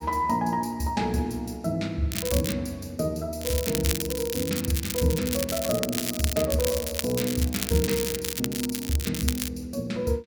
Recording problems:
crackling; at 2 s and from 3.5 to 9.5 s; loose cable, SNR 3 dB

